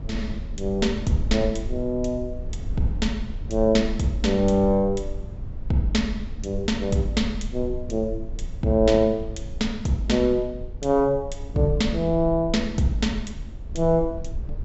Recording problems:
treble cut off; nothing above 7.7 kHz
rumble; below 70 Hz, SNR 11 dB

